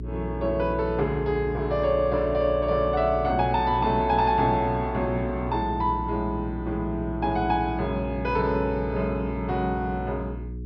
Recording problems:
low-pass filter; nothing above 5.5 kHz
electrical hum; 60 Hz, harmonics up to 420 Hz, SNR 9 dB

